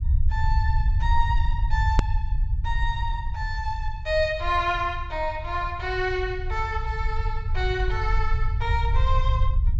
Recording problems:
low-pass filter; nothing above 7.8 kHz
rumble; below 76 Hz, SNR -1 dB
edit click; at 2 s

